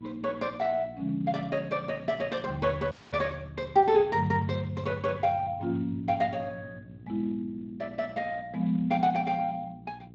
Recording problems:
lossy codec; Speex, log-spectral distance 3 dB
mains hum; 60 Hz, harmonics up to 480 Hz, SNR 20 dB
audio cutting out; at 3 s

